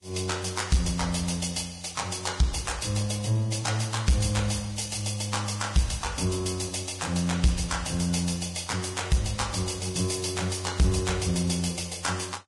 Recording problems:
lossy compression; Vorbis, log-spectral distance 7 dB, nothing above 10.7 kHz
distortion; soft clipping, signal-to-distortion ratio 12 dB

